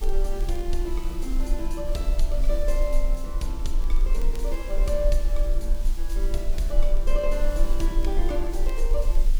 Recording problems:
hum; 60 Hz, harmonics up to 1.5 kHz, SNR 22 dB
hiss; slope +1 dB per octave, SNR 15 dB
low-frequency rumble; below 34 Hz, strongest tone 20 Hz, SNR -4 dB
wind noise; below 210 Hz, SNR 15 dB
crackle; vinyl, SNR 26 dB

